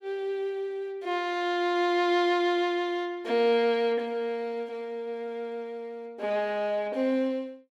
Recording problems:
none

